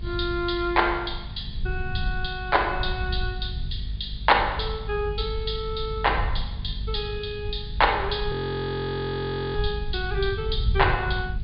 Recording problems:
treble missing; nothing above 4.9 kHz
hum; 50 Hz, harmonics up to 450 Hz, SNR 16 dB
hiss; SNR 28 dB
rumble; below 90 Hz, SNR 6 dB
frozen audio; at 8.5 s for 1 s

